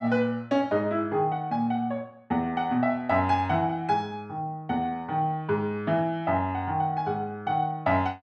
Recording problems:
none

